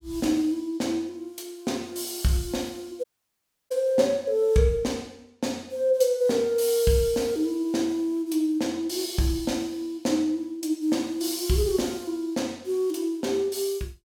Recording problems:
audio cutting out; at 3 s for 0.5 s

